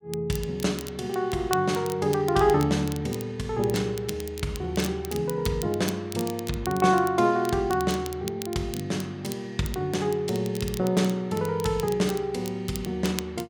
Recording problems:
crackle; vinyl, SNR 15 dB

